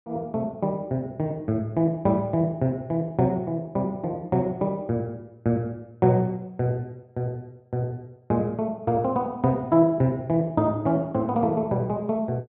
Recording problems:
low-pass filter; nothing above 4 kHz

